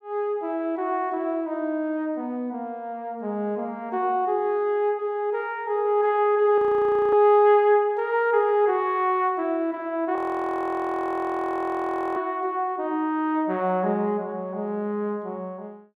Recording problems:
frozen audio; at 6.5 s for 0.5 s and at 10 s for 2 s

